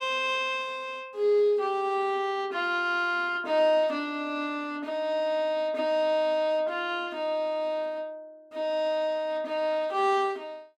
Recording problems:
none

